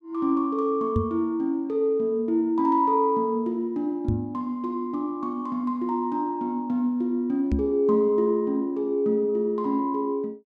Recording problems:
knock on the microphone; at 1 s, at 4 s and at 7.5 s; peak +3 dB vs average level

